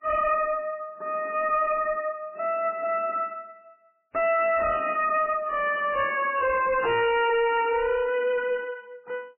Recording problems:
lossy compression; MP3, log-spectral distance 4 dB, nothing above 2.8 kHz
distorted audio; hard clipping, signal-to-distortion ratio 5 dB

